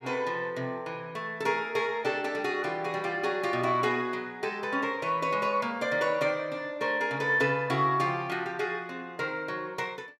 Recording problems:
none

